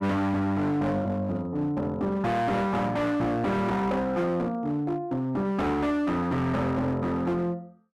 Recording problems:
distorted audio; hard clipping, signal-to-distortion ratio 8 dB

